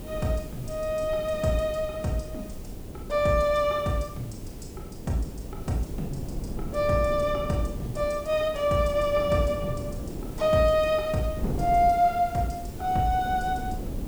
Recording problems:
background hiss; slope -1 dB per octave, SNR 23 dB
wind noise; below 280 Hz, SNR 11 dB

